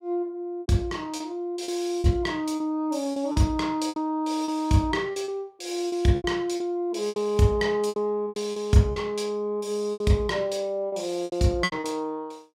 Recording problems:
packet loss; 11% of the sound replaced, filled with repeated pitch periods

